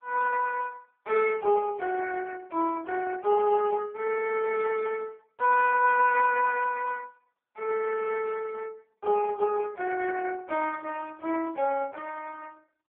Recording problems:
phone line; 340 Hz to 2.8 kHz, AMR-NB

